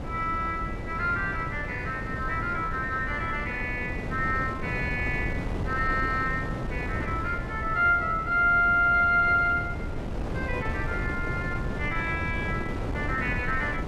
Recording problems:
wind noise; below 380 Hz, SNR 6 dB

